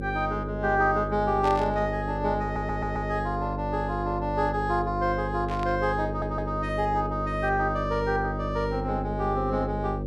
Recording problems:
hum; 50 Hz, harmonics up to 550 Hz, SNR 5 dB
burst of static; at 1.5 s and at 5.5 s; peak -8 dB vs average level
audio stuttering; at 2.5 s and at 6 s

